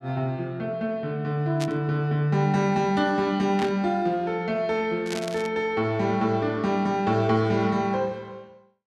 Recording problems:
burst of static; at 1.5 s, at 3.5 s and at 5 s; peak -5 dB vs average level

